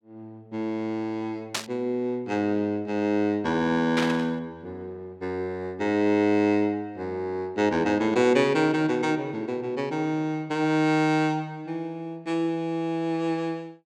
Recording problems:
static burst; at 1.5 s and at 4 s; peak +2 dB vs average level

